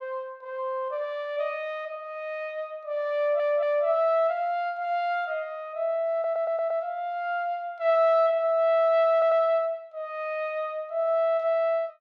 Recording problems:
stutter; at 3 s, at 6 s and at 9 s

